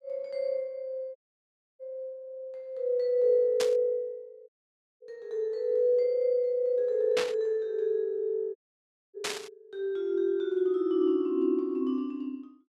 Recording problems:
dropout; at 1 s for 0.5 s, at 4.5 s for 0.5 s and at 8.5 s for 0.5 s
burst of static; at 3.5 s, at 7 s and at 9 s; peak +1 dB vs average level

